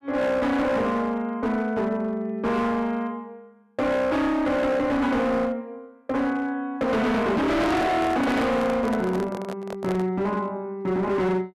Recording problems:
distortion; hard clipping, signal-to-distortion ratio 7 dB
microphone handling noise; from 7.5 to 10 s; peak -1 dB vs average level

